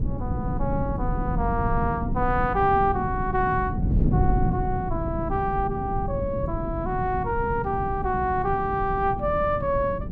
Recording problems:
wind noise; below 180 Hz, SNR 3 dB

